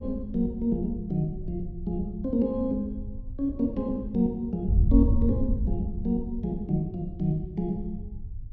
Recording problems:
wind noise; below 84 Hz, SNR 5 dB

